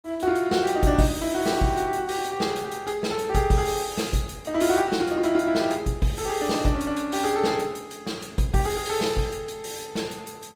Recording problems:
codec artefacts; Opus, log-spectral distance 4 dB

